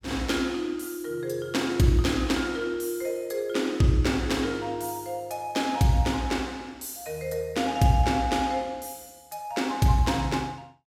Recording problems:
none

